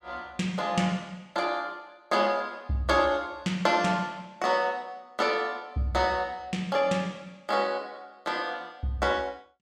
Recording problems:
none

